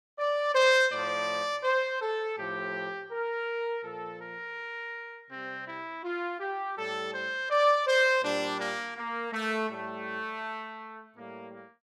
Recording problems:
none

